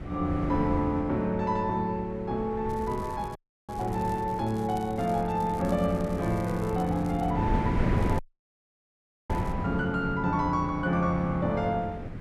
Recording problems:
wind on the microphone; below 280 Hz, SNR 7 dB
crackling; from 2.5 to 7.5 s and from 8 to 9.5 s; loose cable, SNR 25 dB
dropout; at 3.5 s and at 8 s for 1 s

